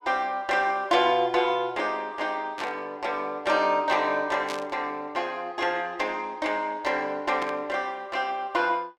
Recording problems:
burst of static; at 2.5 s, at 4.5 s and at 7.5 s; peak -4 dB vs average level

